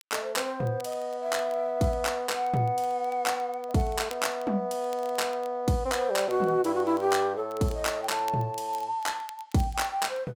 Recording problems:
crackling; vinyl, SNR 24 dB

